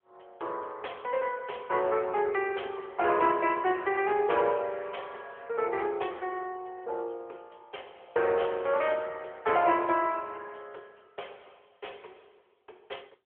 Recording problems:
telephone audio; 340 Hz to 3.4 kHz, AMR-NB

